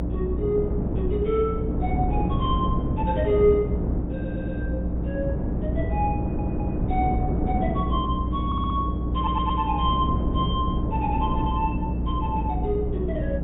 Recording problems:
low-pass filter; nothing above 4 kHz
hum; 60 Hz, harmonics up to 300 Hz, SNR 2 dB
wind on the microphone; below 300 Hz, SNR 2 dB
stutter; 4 times, first at 4 s

